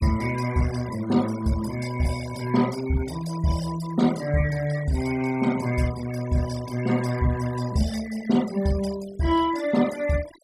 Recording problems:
denoising artefacts; signal-to-artefact ratio 16 dB

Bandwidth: 15.5 kHz